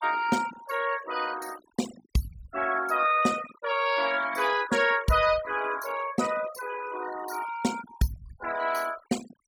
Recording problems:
denoising artefacts; signal-to-artefact ratio 14 dB

